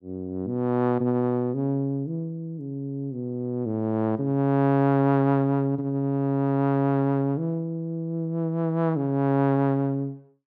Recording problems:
none

